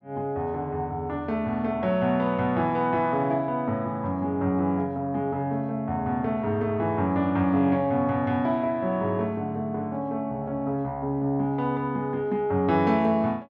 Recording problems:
none

